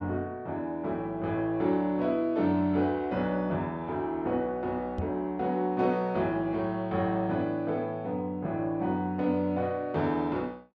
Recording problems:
microphone bump; at 5 s; peak 0 dB vs average level

